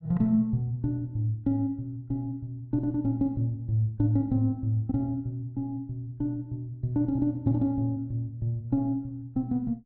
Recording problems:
none

